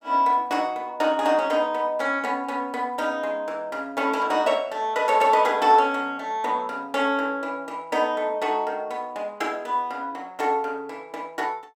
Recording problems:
none

